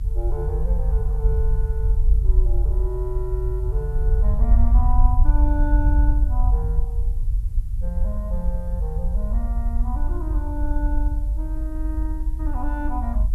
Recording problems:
hiss; slope -2 dB per octave, SNR 27 dB
rumble; below 54 Hz, SNR -10 dB

